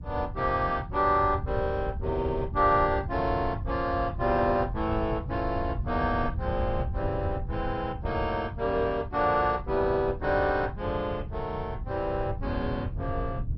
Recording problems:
lossy codec; MP2, log-spectral distance 2 dB, nothing above 5.3 kHz
wind on the microphone; below 120 Hz, SNR 7 dB

